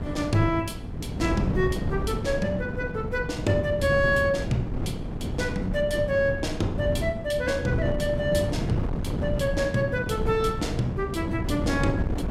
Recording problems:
wind on the microphone; below 250 Hz, SNR 3 dB

